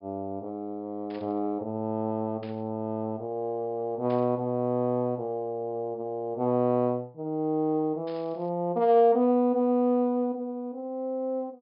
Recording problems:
low-pass filter; nothing above 5.5 kHz
static burst; 4 times, first at 1 s; peak -16 dB vs average level

